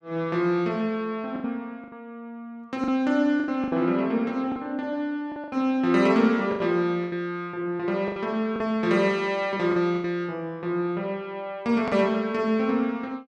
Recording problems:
lost packets; 7% of the sound replaced, filled with the last packet

